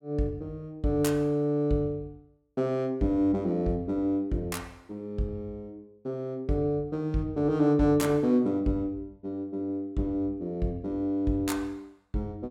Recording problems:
none

